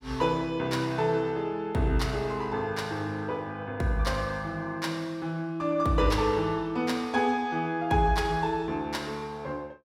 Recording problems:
none

